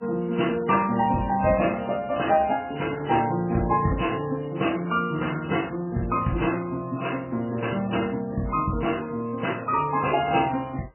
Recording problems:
lossy compression; AAC, then MP3, log-spectral distance 4 dB, nothing above 2.9 kHz

